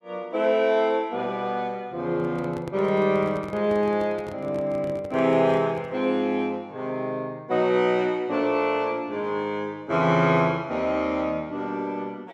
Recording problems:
handling noise; from 2 to 6 s; peak -9 dB vs average level

